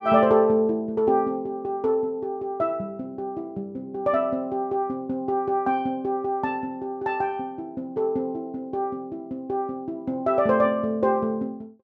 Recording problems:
none

